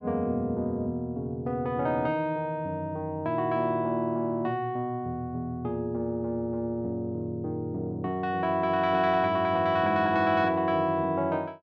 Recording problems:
none

